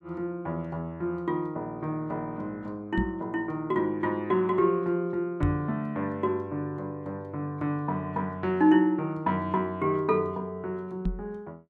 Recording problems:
microphone bump; at 3 s, at 5.5 s and at 11 s; peak +3 dB vs average level

